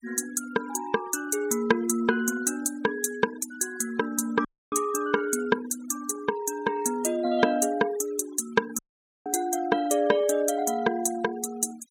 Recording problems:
denoising artefacts; signal-to-artefact ratio 18 dB
dropout; at 4.5 s and at 9 s

